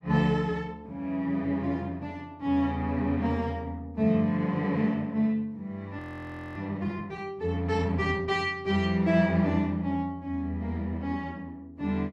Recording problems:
audio freezing; at 6 s for 0.5 s

